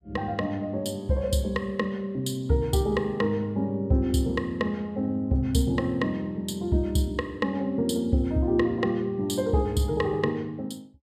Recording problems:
none

